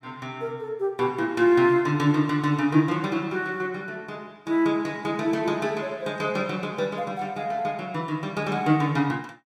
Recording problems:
none

